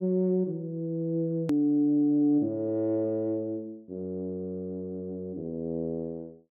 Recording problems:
edit click; at 1.5 s

